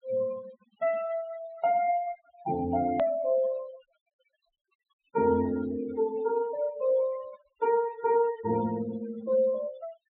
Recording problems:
treble cut off; nothing above 4 kHz
noise reduction artefacts; signal-to-artefact ratio 17 dB
edit click; at 3 s

